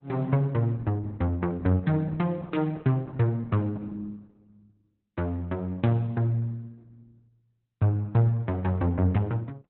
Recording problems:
lossy codec; Opus, log-spectral distance 2 dB, nothing above 4 kHz

